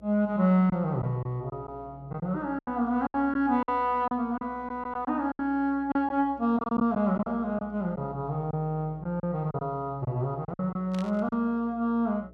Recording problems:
mains hum; 60 Hz, harmonics up to 660 Hz, SNR 25 dB
packet loss; 8% of the sound replaced, filled with silence
burst of static; at 11 s; peak -11 dB vs average level

